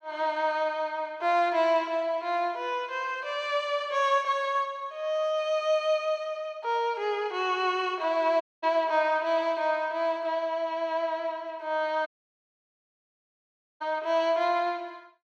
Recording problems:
audio cutting out; at 8.5 s and at 12 s for 1.5 s

